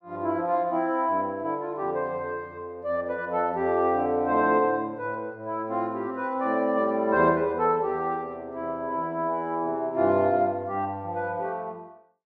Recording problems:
none

